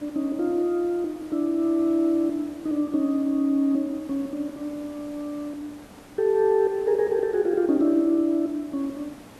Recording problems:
background hiss; slope -6 dB per octave, SNR 22 dB

